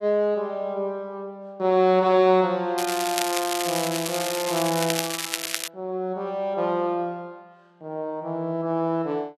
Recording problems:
crackle; from 3 to 5.5 s; loose cable, SNR 4 dB

